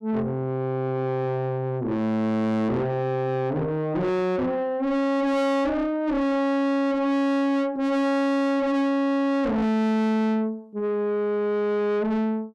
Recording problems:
distorted audio; soft clipping, signal-to-distortion ratio 5 dB

